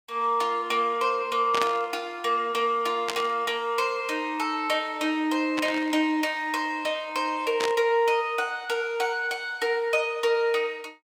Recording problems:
burst of static; 4 times, first at 1.5 s; peak +1 dB vs average level

